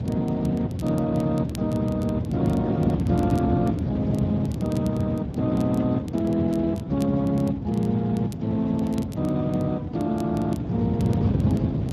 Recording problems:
codec artefacts; Speex, log-spectral distance 2 dB
background hiss; SNR 24 dB
wind on the microphone; below 250 Hz, SNR 3 dB
crackling; vinyl, SNR 25 dB

